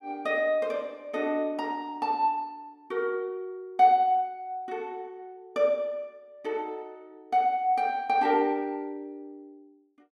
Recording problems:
none

